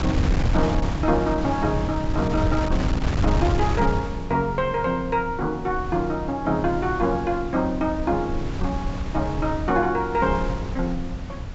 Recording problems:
treble cut off; nothing above 7.7 kHz
wind noise; below 140 Hz, SNR 4 dB

